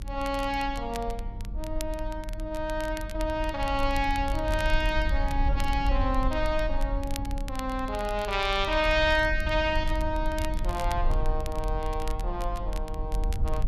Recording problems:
electrical hum; 50 Hz, harmonics up to 600 Hz, SNR 18 dB
rumble; below 54 Hz, SNR 4 dB
crackle; vinyl, SNR 17 dB

